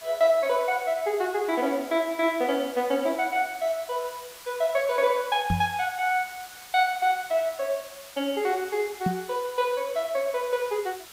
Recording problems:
hiss; slope +1 dB per octave, SNR 17 dB
knock on the microphone; at 5.5 s and at 9 s; peak +3 dB vs average level

